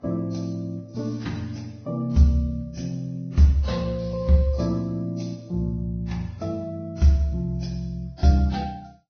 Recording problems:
low-pass filter; nothing above 6.2 kHz
codec artefacts; Vorbis, then AAC, log-spectral distance 2 dB

